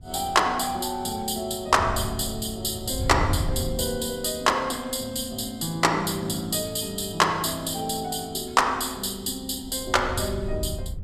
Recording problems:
wind noise; below 100 Hz, SNR 8 dB

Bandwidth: 14.5 kHz